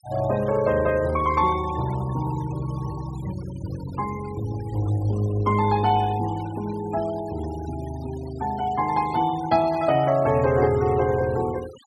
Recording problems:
noise reduction artefacts; signal-to-artefact ratio 19 dB

